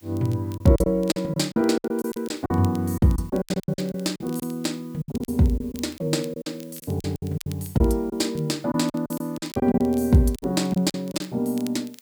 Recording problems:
background hiss; slope +1 dB per octave, SNR 29 dB
crackle; vinyl, SNR 23 dB
lost packets; 14% of the sound replaced, filled with silence

